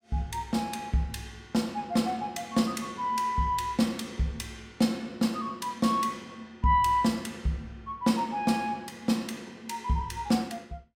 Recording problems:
none

